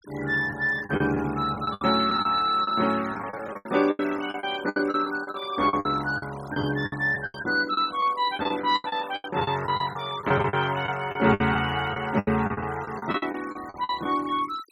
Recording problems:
denoising artefacts; signal-to-artefact ratio 19 dB
packet loss; 15% of the sound replaced, filled with the last packet

